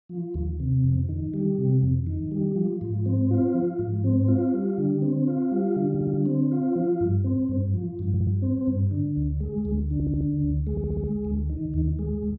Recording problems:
stutter; 4 times, first at 6 s

